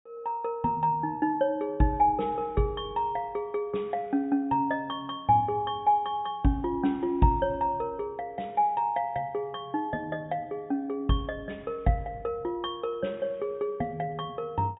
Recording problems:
treble missing; nothing above 4 kHz

